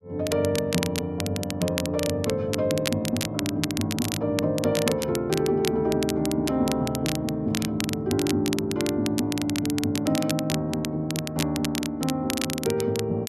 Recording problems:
crackling; vinyl, SNR 7 dB

